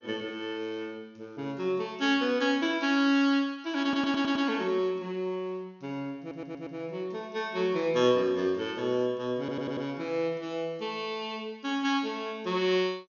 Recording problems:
lossy compression; MP2, log-spectral distance 2 dB, nothing above 6.5 kHz
stutter; at 4 s, at 6 s and at 9.5 s

